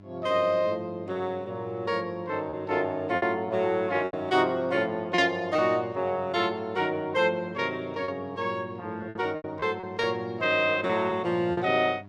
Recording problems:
hum; 50 Hz, harmonics up to 1 kHz, SNR 20 dB
packet loss; 5% of the sound replaced, filled with repeated pitch periods

